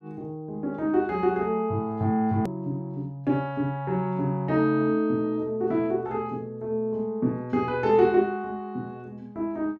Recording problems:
edit click; at 2.5 s

